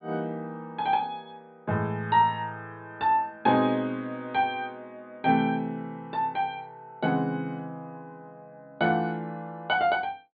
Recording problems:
low-pass filter; nothing above 4.6 kHz

